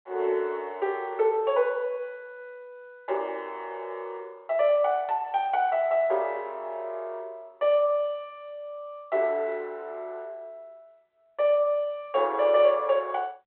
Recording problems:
phone line; 320 Hz to 3.4 kHz, G.726

